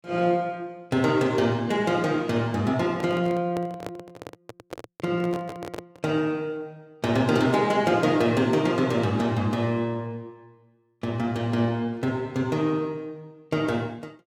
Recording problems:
microphone handling noise; from 3 to 6 s; peak -6 dB vs average level

